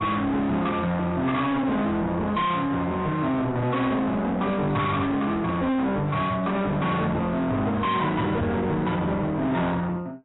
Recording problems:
codec artefacts; AAC, log-spectral distance 2 dB, nothing above 3.8 kHz
distortion; soft clipping, signal-to-distortion ratio 6 dB
microphone bump; at 8.5 s; peak +1 dB vs average level

